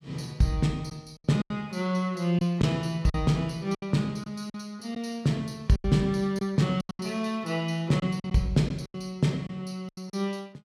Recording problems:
packet loss; 9% of the sound replaced, filled with silence

